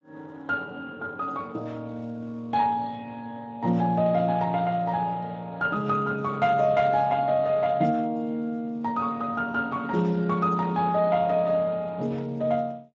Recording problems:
lossy codec; Speex, log-spectral distance 2 dB

